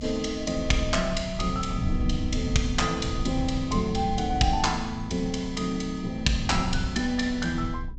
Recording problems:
low-pass filter; nothing above 8 kHz
low-frequency rumble; below 120 Hz, SNR 7 dB

